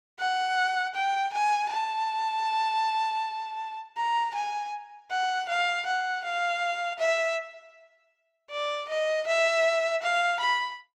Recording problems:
none

